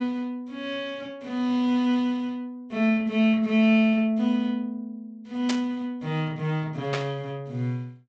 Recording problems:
treble cut off; nothing above 8 kHz
static burst; at 5.5 s and at 7 s; peak 0 dB vs average level

